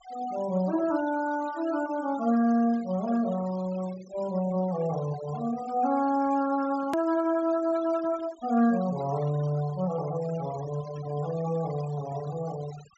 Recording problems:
treble cut off; nothing above 7.7 kHz
noise reduction artefacts; signal-to-artefact ratio 18 dB
click at an edit; at 7 s

